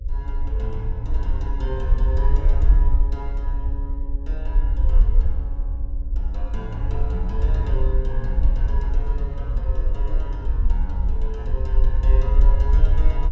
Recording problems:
treble missing; nothing above 8 kHz
electrical hum; 60 Hz, harmonics up to 540 Hz, SNR 22 dB
low-frequency rumble; below 52 Hz, SNR -11 dB

